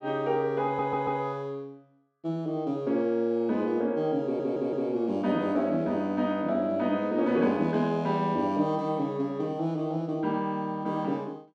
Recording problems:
audio stuttering; at 0.5 s and at 4 s

